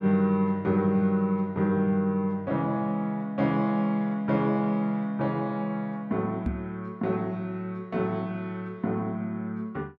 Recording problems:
knock on the microphone; at 6.5 s; peak +2 dB vs average level

